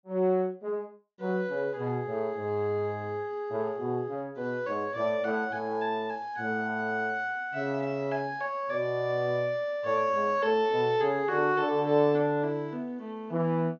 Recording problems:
treble missing; nothing above 6.8 kHz

